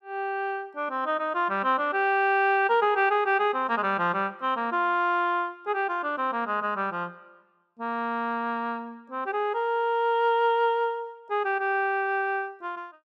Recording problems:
none

